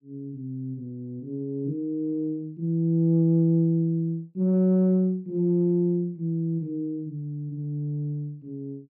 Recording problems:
none

